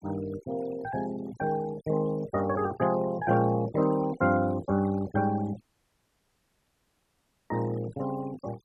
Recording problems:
denoising artefacts; signal-to-artefact ratio 17 dB
audio cutting out; at 5.5 s for 2 s

